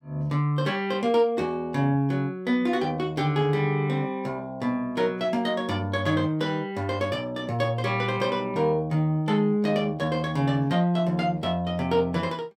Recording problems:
none

